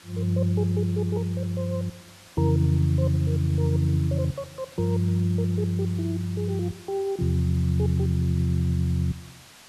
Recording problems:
hiss; slope 0 dB per octave, SNR 22 dB

